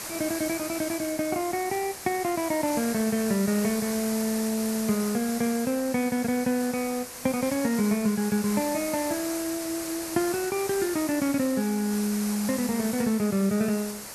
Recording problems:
background hiss; SNR 8 dB

